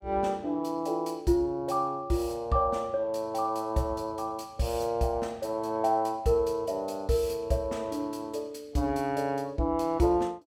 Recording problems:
none

